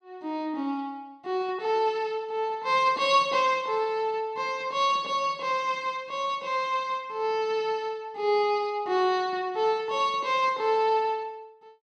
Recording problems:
none

